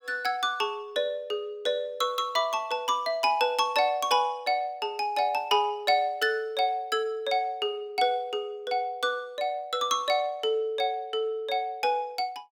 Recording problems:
none

